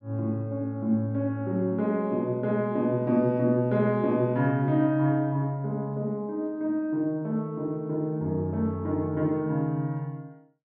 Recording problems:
none

